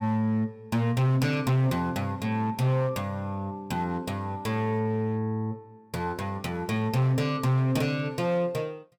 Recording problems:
distorted audio; hard clipping, signal-to-distortion ratio 10 dB

